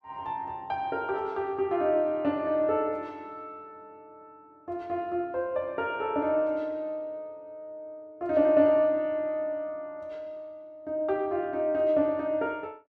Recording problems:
none

